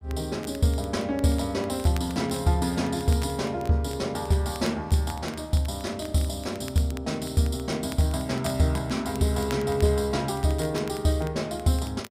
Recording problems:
crackle; vinyl, SNR 20 dB

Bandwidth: 15.5 kHz